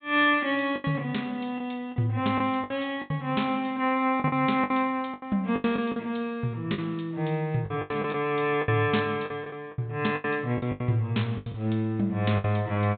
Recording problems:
treble missing; nothing above 4 kHz
lost packets; 11% of the sound replaced, filled with the last packet

